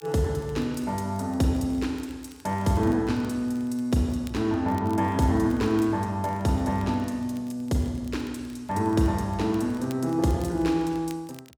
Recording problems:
crackling; vinyl, SNR 28 dB

